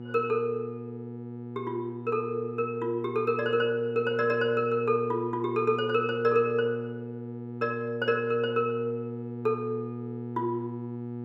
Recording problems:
hum; 60 Hz, harmonics up to 960 Hz, SNR 9 dB

